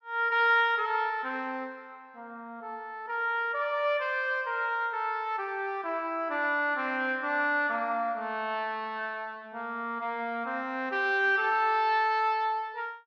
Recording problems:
none

